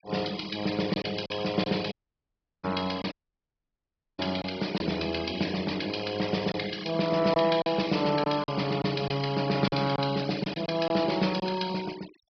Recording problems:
low-pass filter; nothing above 5.5 kHz
denoising artefacts; signal-to-artefact ratio 16 dB
lost packets; 5% of the sound replaced, filled with silence
audio cutting out; at 2 s for 0.5 s and at 3 s for 1 s

